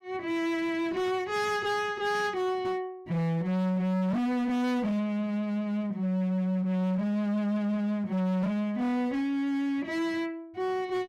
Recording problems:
distorted audio; hard clipping, signal-to-distortion ratio 6 dB

